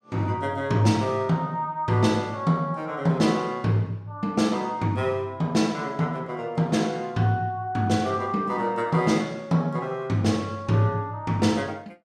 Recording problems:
none

